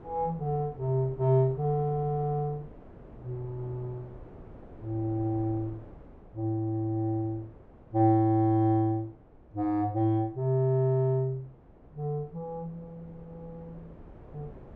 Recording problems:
wind on the microphone; below 460 Hz, SNR 22 dB

